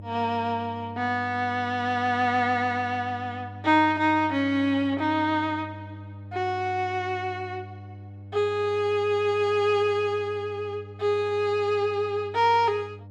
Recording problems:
hum; 50 Hz, harmonics up to 600 Hz, SNR 16 dB

